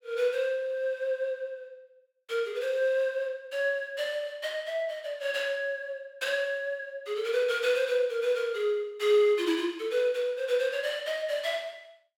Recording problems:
none

